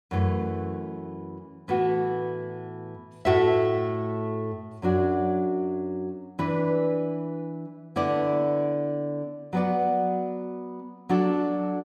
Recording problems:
none

